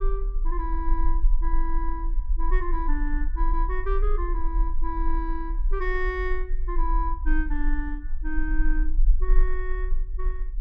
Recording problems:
rumble; below 36 Hz, strongest tone 22 Hz, SNR -5 dB

